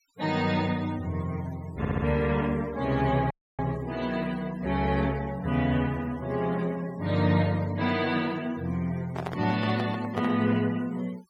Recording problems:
noise reduction artefacts; signal-to-artefact ratio 21 dB
stutter; at 2 s
audio cutting out; at 3.5 s
microphone handling noise; from 9 to 10 s; peak -2 dB vs average level

